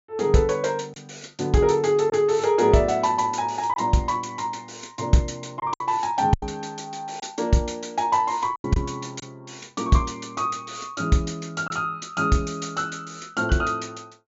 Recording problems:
low-pass filter; nothing above 7.4 kHz
packet loss; 3% of the sound replaced, filled with silence

